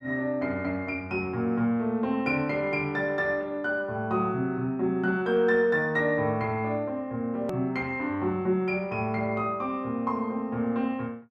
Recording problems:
hard cut with a click; at 7.5 s

